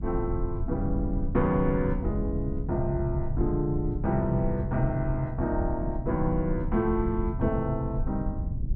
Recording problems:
rumble; below 110 Hz, SNR 4 dB

